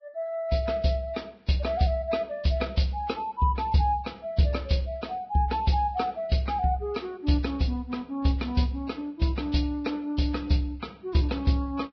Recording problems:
lossy compression; Vorbis, log-spectral distance 3 dB, nothing above 5.3 kHz

